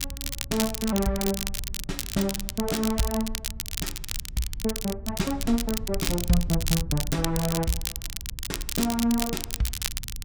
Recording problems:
rumble; below 70 Hz, SNR 10 dB
crackling; vinyl, SNR 4 dB

